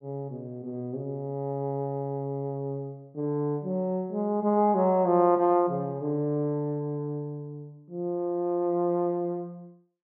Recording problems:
none

